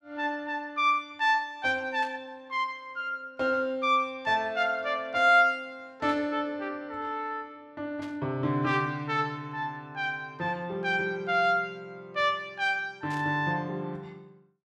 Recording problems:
burst of static; 4 times, first at 2 s; peak -13 dB vs average level

